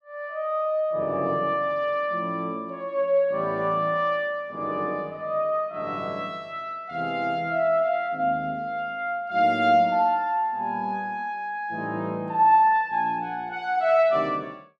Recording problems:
none

